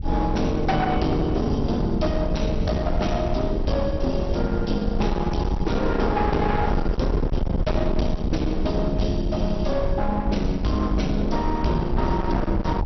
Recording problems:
lossy compression; MP2, then MP2, log-spectral distance 3 dB, nothing above 5.8 kHz
distortion; hard clipping, signal-to-distortion ratio 9 dB
wind noise; below 120 Hz, SNR 4 dB

